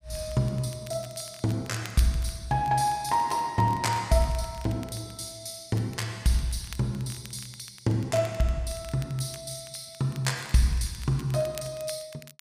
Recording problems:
crackle; vinyl, SNR 20 dB

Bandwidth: 15 kHz